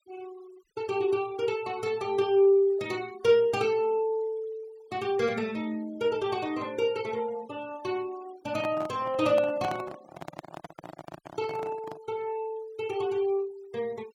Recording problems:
denoising artefacts; signal-to-artefact ratio 24 dB
handling noise; from 8.5 to 12 s; peak -4 dB vs average level

